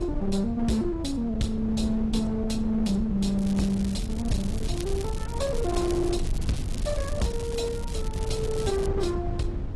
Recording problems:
codec artefacts; AAC, log-spectral distance 2 dB, nothing above 12 kHz
distorted audio; hard clipping, uneven, signal-to-distortion ratio 10 dB
rumble; below 130 Hz, SNR 5 dB
crackle; from 3.5 to 6.5 s and from 6.5 to 9 s; loose cable, SNR 15 dB

